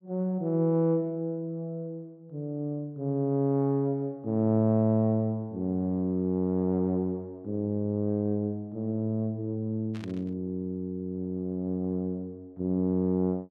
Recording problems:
static burst; at 10 s; peak -13 dB vs average level

